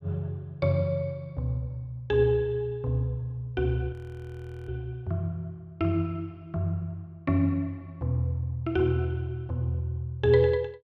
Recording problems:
audio freezing; at 4 s for 0.5 s

